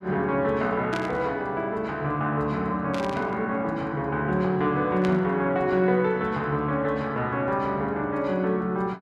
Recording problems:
static burst; at 1 s, at 3 s and at 5 s; peak -6 dB vs average level

